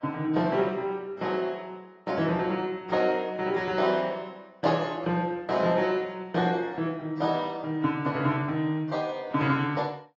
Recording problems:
lossy compression; AAC, log-spectral distance 2 dB, nothing above 7.1 kHz

